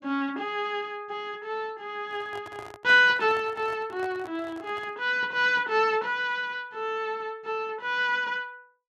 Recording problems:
handling noise; from 2 to 5 s; peak -10 dB vs average level

